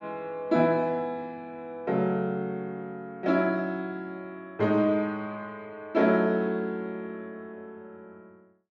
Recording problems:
none

